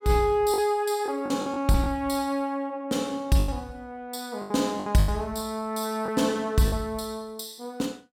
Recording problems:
packet loss; 7% of the sound replaced, filled with the last packet

